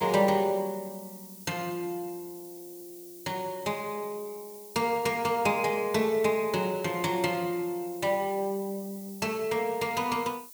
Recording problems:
background hiss; SNR 16 dB

